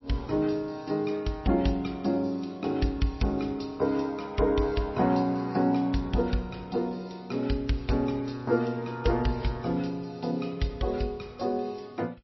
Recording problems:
codec artefacts; MP3, log-spectral distance 4 dB, nothing above 5.7 kHz

